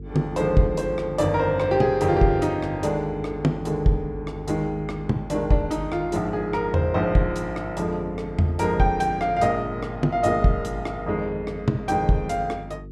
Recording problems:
hum; 50 Hz, harmonics up to 450 Hz, SNR 15 dB

